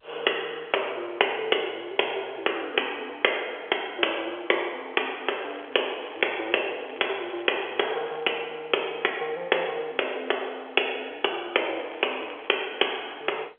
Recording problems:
telephone audio; 320 Hz to 3.4 kHz, G.711
crackle; from 5 to 8 s and at 12 s; loose cable, SNR 20 dB

